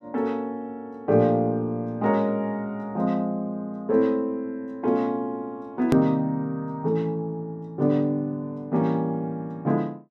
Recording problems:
hard cut with a click; at 6 s

